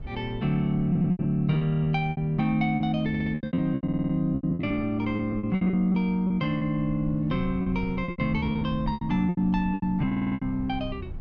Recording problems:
wind noise; below 110 Hz, SNR 16 dB
packet loss; 16% of the sound replaced, filled with repeated pitch periods
audio stuttering; 4 times, first at 1 s

